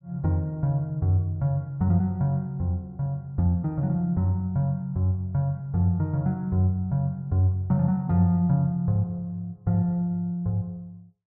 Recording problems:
none

